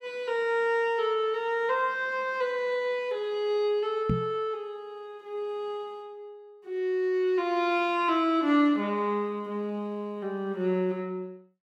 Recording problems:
microphone bump; at 4 s; peak +3 dB vs average level

